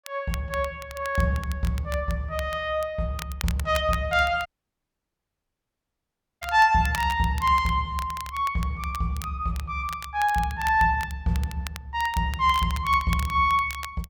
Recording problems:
crackle; vinyl, SNR 16 dB
dropout; at 4.5 s for 2 s

